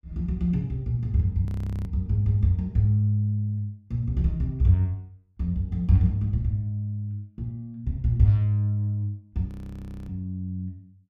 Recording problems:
audio freezing; at 1.5 s and at 9.5 s for 0.5 s

